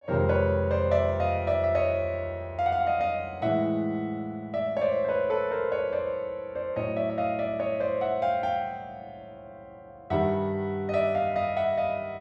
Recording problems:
none

